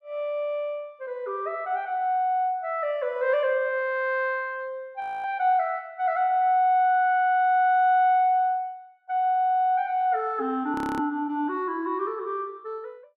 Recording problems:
frozen audio; at 5 s and at 11 s

